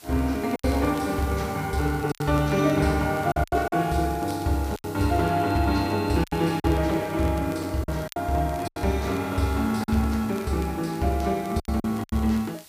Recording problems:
background hiss; slope +1 dB per octave, SNR 20 dB
crackling; vinyl, SNR 26 dB
lost packets; 8% of the sound replaced, filled with silence

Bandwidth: 15 kHz